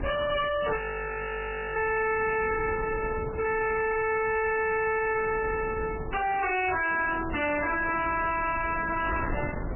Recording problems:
lossy compression; MP3, log-spectral distance 8 dB, nothing above 2.7 kHz
distortion; hard clipping, signal-to-distortion ratio 5 dB
wind on the microphone; below 880 Hz, SNR 10 dB
audio freezing; at 1 s for 1 s

